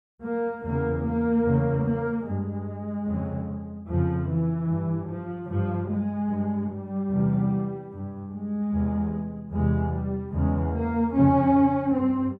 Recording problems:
none

